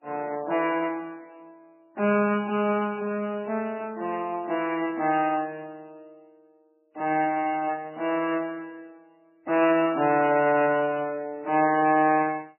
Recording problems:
codec artefacts; MP3, then MP3, log-spectral distance 2 dB, nothing above 2.7 kHz

